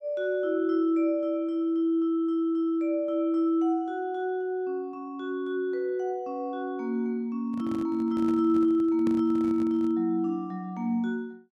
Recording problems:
handling noise; from 7.5 to 10 s; peak -3 dB vs average level

